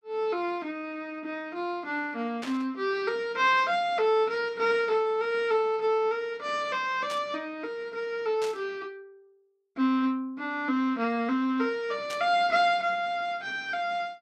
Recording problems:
static burst; 4 times, first at 2.5 s; peak -6 dB vs average level

